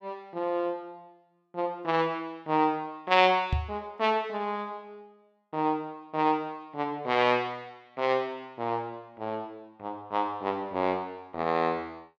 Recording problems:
microphone bump; at 3.5 s; peak +4 dB vs average level

